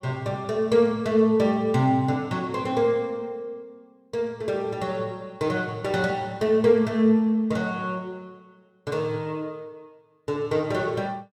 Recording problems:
none

